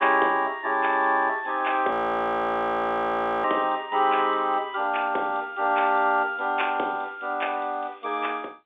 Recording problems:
telephone audio; 280 Hz to 3.6 kHz, G.711
frozen audio; at 2 s for 1.5 s

